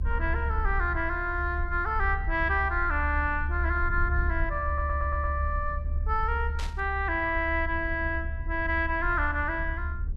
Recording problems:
rumble; below 72 Hz, SNR 4 dB
stutter; at 4.5 s
static burst; at 6.5 s; peak -7 dB vs average level

